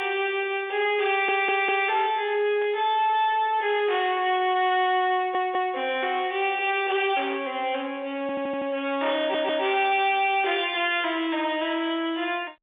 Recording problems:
telephone audio; 300 Hz to 3.6 kHz, G.711
distorted audio; hard clipping, signal-to-distortion ratio 10 dB
stutter; 4 times, first at 1 s
static burst; at 2.5 s; peak -15 dB vs average level

